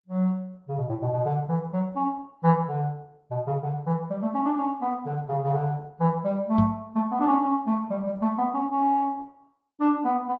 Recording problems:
codec artefacts; MP3, then Opus, log-spectral distance 2 dB
knock on the microphone; at 6.5 s; peak +6 dB vs average level

